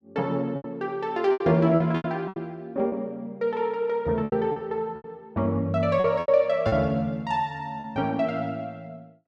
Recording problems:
lost packets; 9% of the sound replaced, filled with repeated pitch periods

